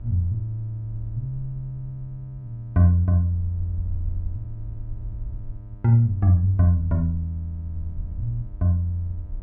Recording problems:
electrical hum; 50 Hz, harmonics up to 1.6 kHz, SNR 27 dB
wind noise; below 58 Hz, SNR 16 dB

